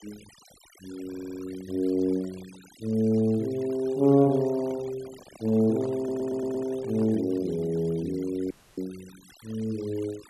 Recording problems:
noise reduction artefacts; signal-to-artefact ratio 23 dB
audio stuttering; at 1 s and at 6 s
microphone handling noise; from 4 to 7.5 s; peak -11 dB vs average level
dropout; at 8.5 s

